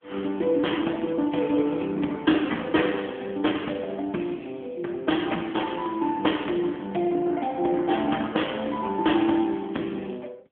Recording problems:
telephone audio; 170 Hz to 3.4 kHz, AMR-NB

